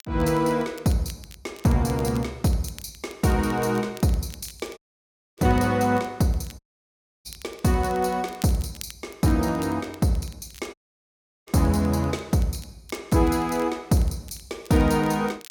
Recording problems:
crackling; vinyl, SNR 23 dB
audio cutting out; at 5 s for 0.5 s, at 6.5 s for 0.5 s and at 11 s for 0.5 s

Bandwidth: 17 kHz